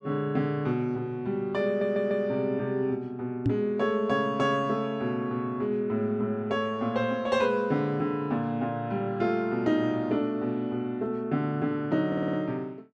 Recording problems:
stutter; at 1.5 s and at 12 s
microphone thump; at 3.5 s; peak +6 dB vs average level

